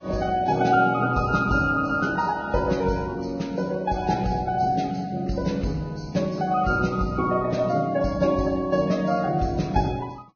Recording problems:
codec artefacts; Vorbis, log-spectral distance 3 dB, nothing above 6.5 kHz

